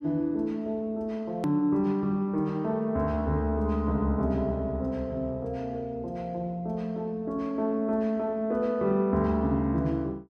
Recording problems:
click at an edit; at 1.5 s

